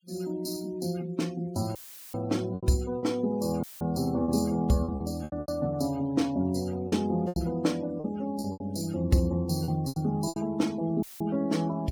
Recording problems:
denoising artefacts; signal-to-artefact ratio 24 dB
lost packets; 8% of the sound replaced, filled with repeated pitch periods
dropout; at 2 s, at 3.5 s and at 11 s; filled with static

